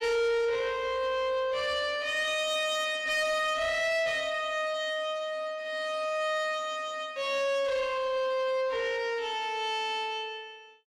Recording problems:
distortion; soft clipping, signal-to-distortion ratio 11 dB

